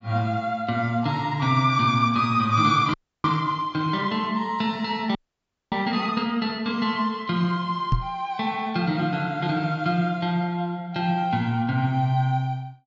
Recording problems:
low-pass filter; nothing above 8 kHz
audio freezing; at 3 s and at 5 s for 0.5 s
microphone bump; at 8 s; peak +5 dB vs average level

